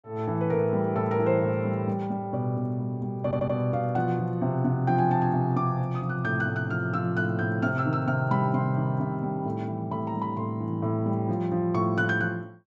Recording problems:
audio stuttering; at 3 s

